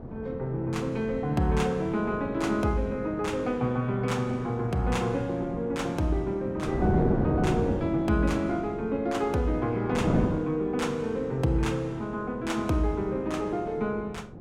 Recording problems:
wind on the microphone; below 360 Hz, SNR 6 dB

